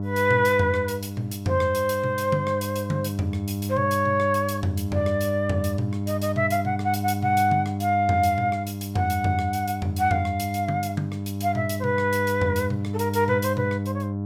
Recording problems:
hum; 50 Hz, harmonics up to 700 Hz, SNR 5 dB

